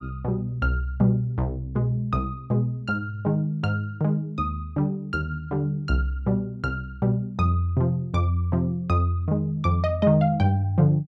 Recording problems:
none

